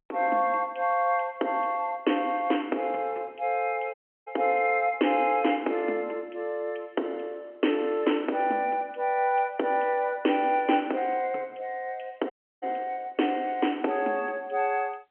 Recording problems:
phone line; 240 Hz to 3.2 kHz, G.711
dropout; at 4 s and at 12 s

